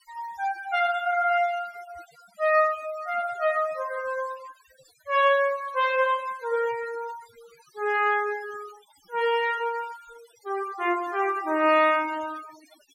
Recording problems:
denoising artefacts; signal-to-artefact ratio 19 dB

